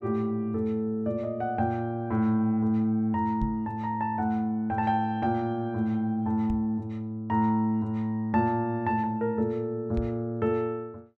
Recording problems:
microphone thump; at 3.5 s, at 6.5 s and at 10 s; peak 0 dB vs average level

